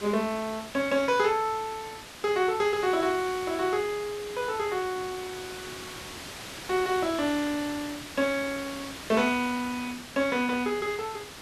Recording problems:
hiss; slope -2 dB per octave, SNR 12 dB

